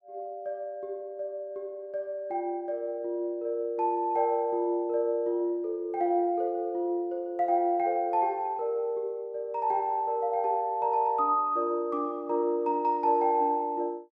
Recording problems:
none

